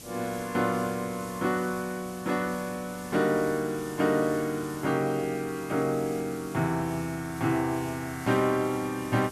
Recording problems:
background hiss; SNR 16 dB

